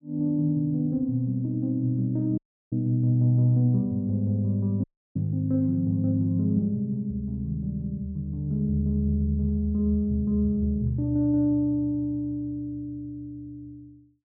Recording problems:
audio cutting out; at 2.5 s and at 5 s

